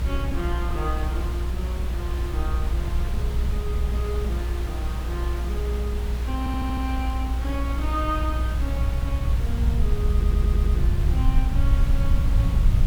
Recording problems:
hiss; slope -4 dB per octave, SNR 4 dB
rumble; below 72 Hz, SNR -8 dB
audio stuttering; at 6.5 s and at 10 s

